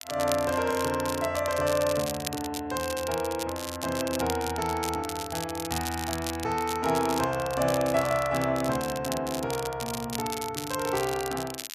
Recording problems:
crackle; vinyl, SNR 8 dB

